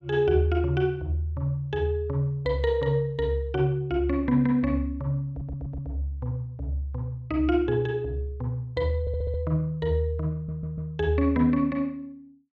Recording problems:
stutter; at 5.5 s, at 9 s and at 10 s

